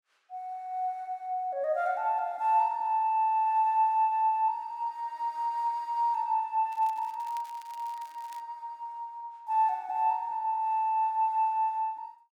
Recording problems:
crackling; from 6.5 to 8.5 s; loose cable, SNR 27 dB

